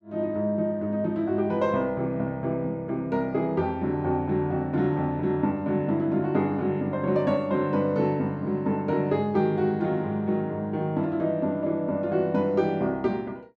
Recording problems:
none

